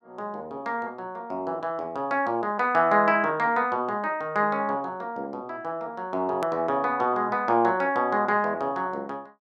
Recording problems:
hard cut with a click; at 6.5 s

